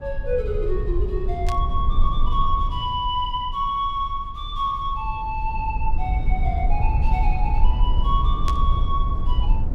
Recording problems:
rumble; below 60 Hz, strongest tone 20 Hz, SNR -1 dB
static burst; at 1.5 s and at 8.5 s; peak -3 dB vs average level

